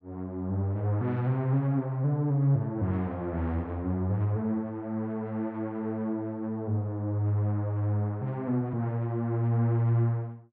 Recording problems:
none

